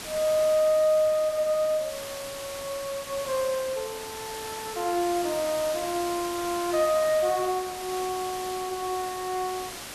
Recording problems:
hiss; slope -1 dB per octave, SNR 10 dB

